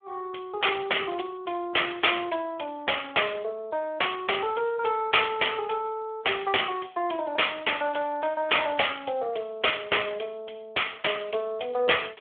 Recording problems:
telephone audio; 320 Hz to 3.4 kHz, Speex

